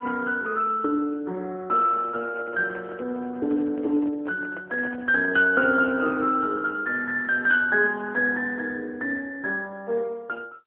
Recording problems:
telephone audio; 260 Hz to 2.8 kHz, AMR-NB
microphone handling noise; from 2 to 6 s; peak -13 dB vs average level

